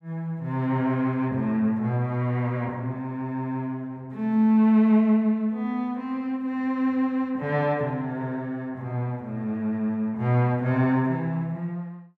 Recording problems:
none

